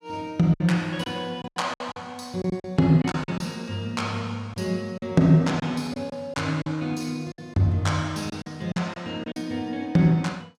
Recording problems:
packet loss; 9% of the sound replaced, filled with silence

